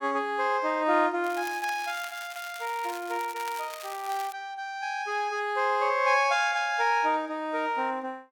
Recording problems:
crackling; from 1 to 4.5 s; loose cable, SNR 15 dB

